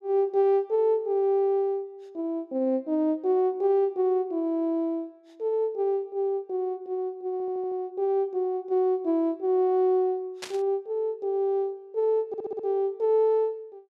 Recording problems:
stutter; at 7.5 s and at 12 s
static burst; at 10 s; peak -5 dB vs average level

